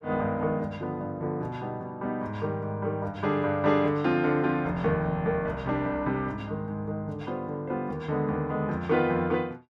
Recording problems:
none

